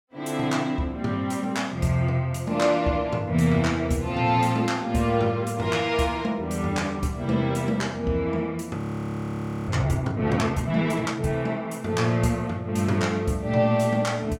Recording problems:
frozen audio; at 9 s for 1 s

